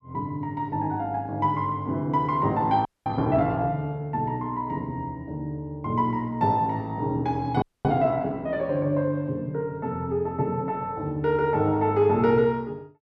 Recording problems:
frozen audio; at 3 s and at 7.5 s

